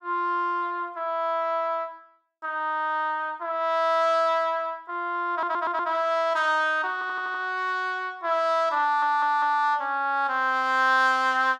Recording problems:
stutter; at 5.5 s, at 7 s and at 9 s

